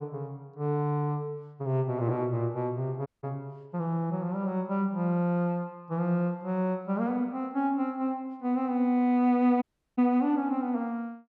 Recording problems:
audio cutting out; at 3 s and at 9.5 s

